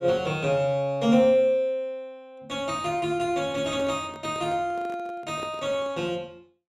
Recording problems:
microphone handling noise; from 3.5 to 6 s; peak -10 dB vs average level

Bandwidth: 14.5 kHz